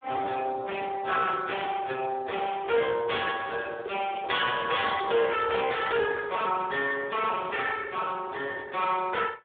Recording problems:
telephone audio; 300 Hz to 3.7 kHz, Speex
distorted audio; soft clipping, signal-to-distortion ratio 12 dB
handling noise; from 2.5 to 5.5 s; peak -6 dB vs average level

